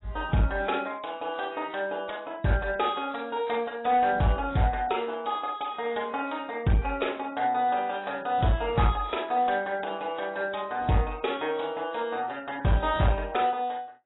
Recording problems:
lossy codec; AAC, log-spectral distance 5 dB, nothing above 3.8 kHz
distorted audio; hard clipping, uneven, signal-to-distortion ratio 12 dB

